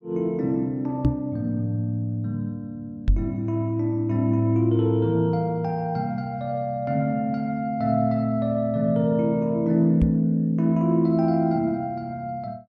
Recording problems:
knock on the microphone; at 1 s, at 3 s and at 10 s; peak +6 dB vs average level

